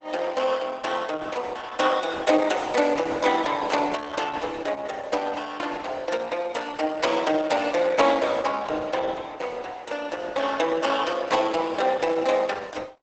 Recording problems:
lossy compression; Opus, log-spectral distance 4 dB, nothing above 7.8 kHz

